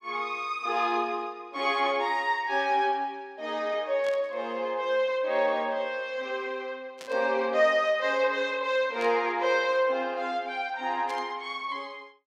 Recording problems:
static burst; 4 times, first at 4 s; peak -10 dB vs average level

